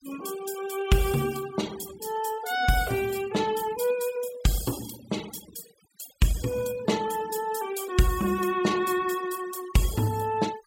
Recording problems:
denoising artefacts; signal-to-artefact ratio 15 dB

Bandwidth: 16 kHz